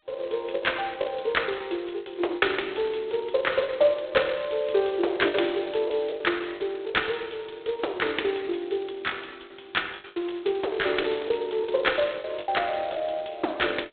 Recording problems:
telephone audio; 300 Hz to 3.9 kHz, G.726
packet loss; 8% of the sound replaced, filled with the last packet

